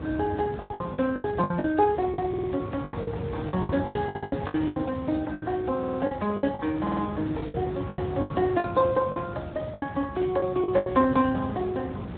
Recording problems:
treble missing; nothing above 3.8 kHz
codec artefacts; Speex, log-spectral distance 3 dB
wind on the microphone; below 360 Hz, SNR 9 dB
packet loss; 15% of the sound replaced, filled with the last packet
audio stuttering; 4 times, first at 2.5 s

